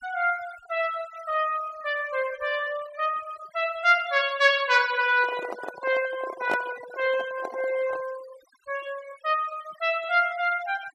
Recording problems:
noise reduction artefacts; signal-to-artefact ratio 18 dB
microphone handling noise; from 5 to 8 s; peak -1 dB vs average level

